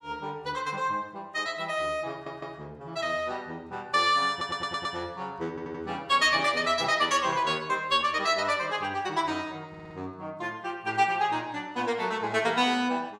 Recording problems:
stutter; 4 times, first at 2 s

